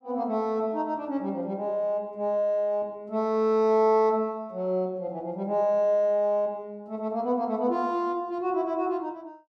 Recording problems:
none

